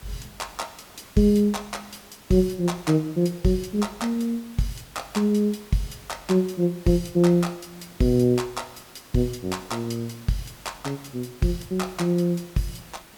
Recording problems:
hiss; slope -3 dB per octave, SNR 22 dB

